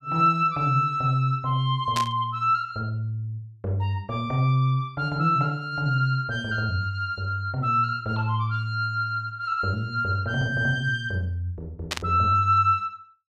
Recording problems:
static burst; at 2 s and at 12 s; peak +1 dB vs average level

